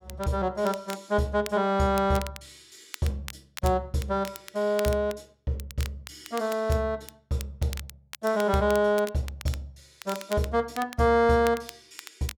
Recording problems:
crackling; vinyl, SNR 16 dB

